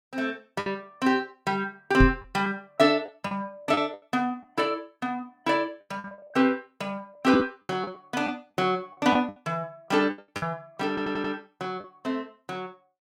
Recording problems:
packet loss; 8% of the sound replaced, filled with the last packet
knock on the microphone; at 2 s; peak +9 dB vs average level
audio stuttering; at 11 s

